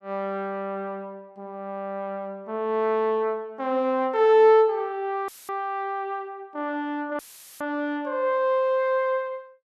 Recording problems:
dropout; at 5.5 s and at 7 s; filled with static

